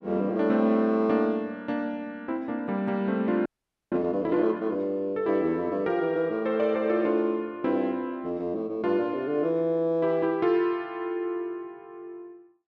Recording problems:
audio freezing; at 3.5 s

